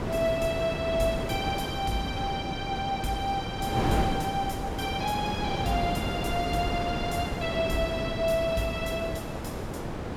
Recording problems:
wind noise; below 670 Hz, SNR 2 dB

